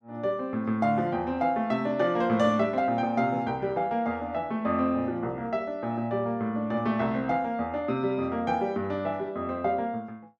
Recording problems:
none

